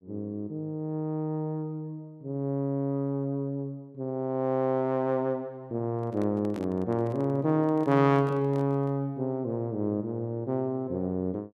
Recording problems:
handling noise; from 6 to 9 s; peak -7 dB vs average level

